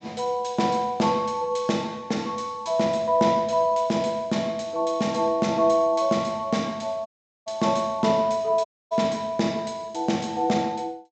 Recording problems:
low-pass filter; nothing above 8 kHz
dropout; at 7 s and at 8.5 s

